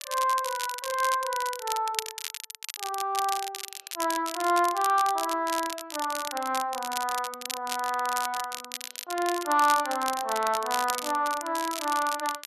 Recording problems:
crackling; vinyl, SNR 8 dB

